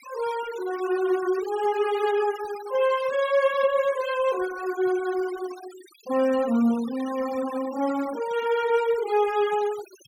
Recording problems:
denoising artefacts; signal-to-artefact ratio 17 dB

